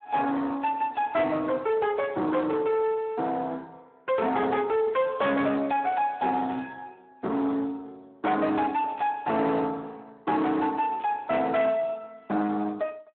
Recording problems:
telephone audio; 240 Hz to 3.4 kHz, Speex
distorted audio; soft clipping, signal-to-distortion ratio 12 dB
static burst; 4 times, first at 4.5 s; peak -17 dB vs average level

